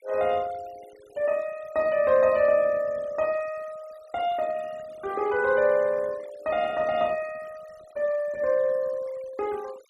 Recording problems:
noise reduction artefacts; signal-to-artefact ratio 22 dB

